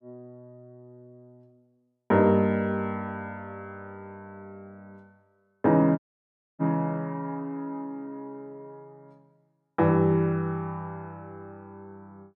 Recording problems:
audio cutting out; at 6 s for 0.5 s

